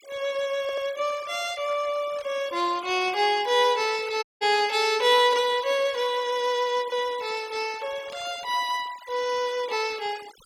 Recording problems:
noise reduction artefacts; signal-to-artefact ratio 19 dB
audio stuttering; at 0.5 s
static burst; at 2 s and at 8 s; peak -18 dB vs average level
audio cutting out; at 4 s

